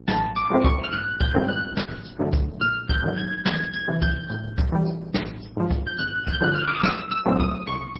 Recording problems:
codec artefacts; MP3, then Opus, log-spectral distance 4 dB, nothing above 7.8 kHz
hum; 60 Hz, harmonics up to 840 Hz, SNR 22 dB
lost packets; 1% of the sound replaced, filled with the last packet

